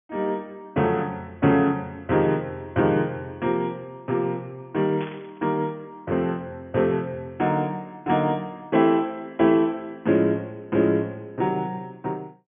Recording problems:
treble missing; nothing above 3.5 kHz
static burst; at 5 s; peak -11 dB vs average level

